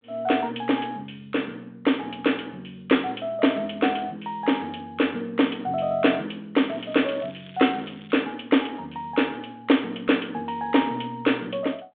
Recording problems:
telephone audio; 170 Hz to 3.6 kHz, G.726
crackle; from 6.5 to 8 s; loose cable, SNR 23 dB

